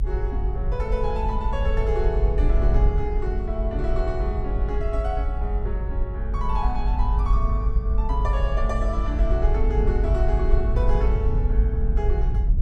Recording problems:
low-frequency rumble; below 52 Hz, SNR -5 dB

